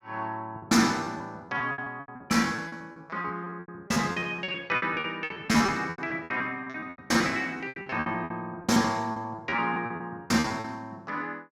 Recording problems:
packet loss; 19% of the sound replaced, filled with repeated pitch periods

